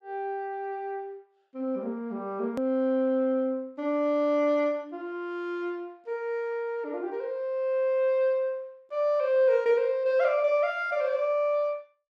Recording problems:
hard cut with a click; at 2.5 s

